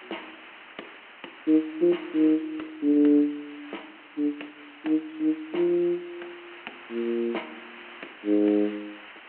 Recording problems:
telephone audio; 240 Hz to 3.1 kHz, G.726
background hiss; SNR 20 dB

